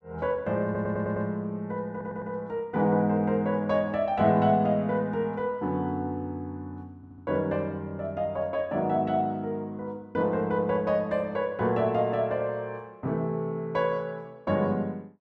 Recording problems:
stutter; at 0.5 s, at 2 s and at 7 s

